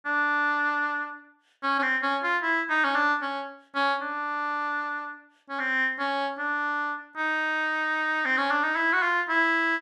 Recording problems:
none

